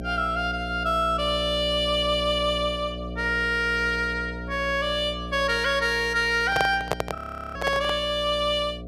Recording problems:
hum; 60 Hz, harmonics up to 720 Hz, SNR 12 dB
handling noise; from 6.5 to 8 s; peak +3 dB vs average level
audio freezing; at 7 s

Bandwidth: 14.5 kHz